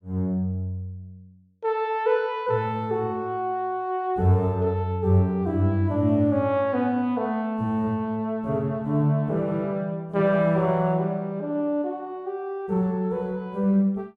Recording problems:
none

